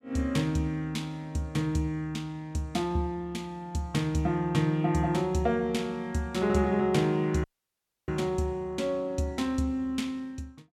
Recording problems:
dropout; at 7.5 s for 0.5 s

